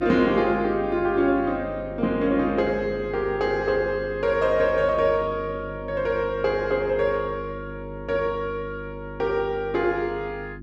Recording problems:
hum; 50 Hz, harmonics up to 350 Hz, SNR 14 dB

